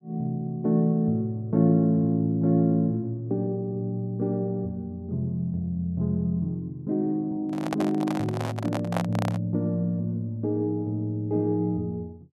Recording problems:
microphone handling noise; from 7.5 to 9.5 s; peak +2 dB vs average level

